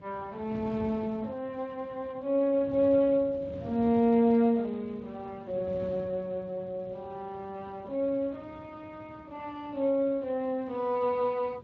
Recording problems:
lossy compression; Speex, log-spectral distance 2 dB
wind noise; below 310 Hz, SNR 18 dB

